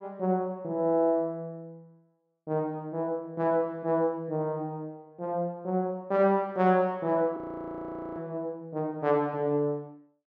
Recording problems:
frozen audio; at 7.5 s for 1 s

